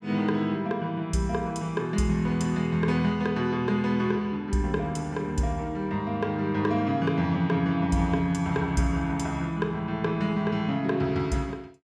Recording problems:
none

